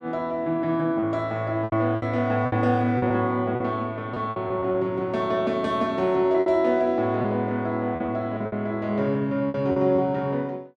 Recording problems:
lost packets; 8% of the sound replaced, filled with repeated pitch periods

